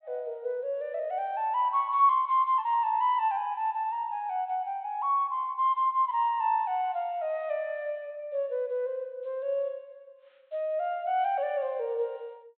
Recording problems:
treble cut off; nothing above 4 kHz

